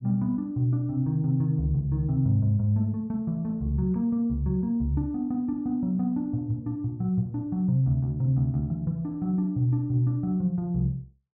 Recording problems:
none

